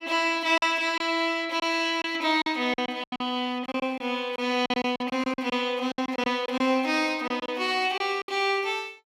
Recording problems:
lost packets; 11% of the sound replaced, filled with silence

